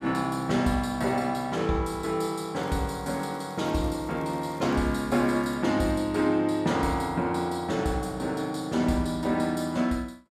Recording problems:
crackle; from 2.5 to 5.5 s; loose cable, SNR 28 dB

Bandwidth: 14.5 kHz